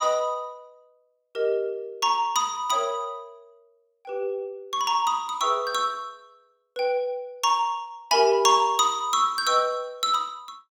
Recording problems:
none

